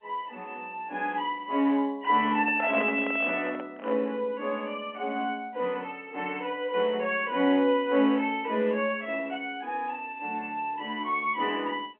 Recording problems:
phone line; 240 Hz to 3.3 kHz, G.711
microphone handling noise; from 2.5 to 4 s; peak -2 dB vs average level

